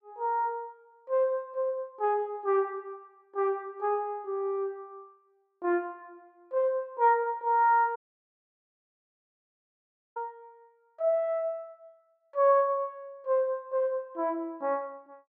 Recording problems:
audio cutting out; at 8 s for 2 s

